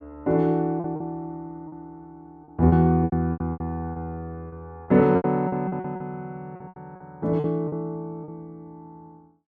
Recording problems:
lost packets; 12% of the sound replaced, filled with repeated pitch periods

